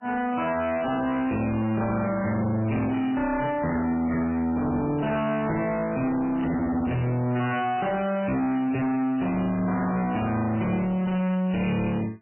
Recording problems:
lossy codec; MP3, log-spectral distance 3 dB, nothing above 3 kHz
distortion; soft clipping, signal-to-distortion ratio 7 dB
static burst; 4 times, first at 3 s; peak -13 dB vs average level

